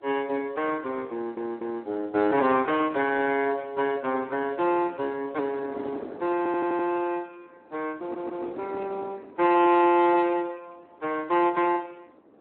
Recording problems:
telephone audio; 220 Hz to 2.9 kHz, Speex
wind on the microphone; below 590 Hz, SNR 20 dB
stutter; at 1 s, at 6.5 s and at 8 s

